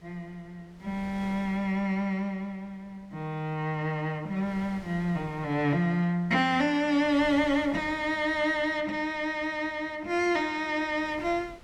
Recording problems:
wind on the microphone; below 870 Hz, SNR 23 dB

